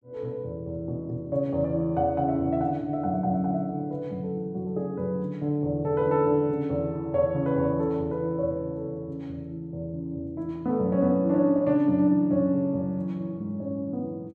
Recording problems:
none

